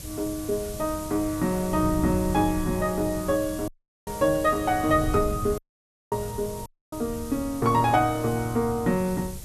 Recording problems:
background hiss; SNR 15 dB
wind on the microphone; below 130 Hz, SNR 12 dB
audio cutting out; at 3.5 s, at 5.5 s for 0.5 s and at 6.5 s

